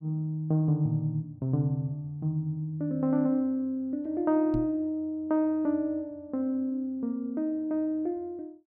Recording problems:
microphone bump; at 4.5 s; peak -2 dB vs average level

